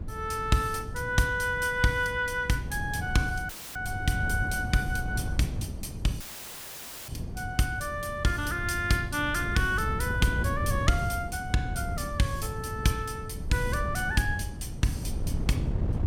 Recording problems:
wind noise; below 150 Hz, SNR 6 dB
audio cutting out; at 3.5 s and at 6 s for 1 s; filled with static

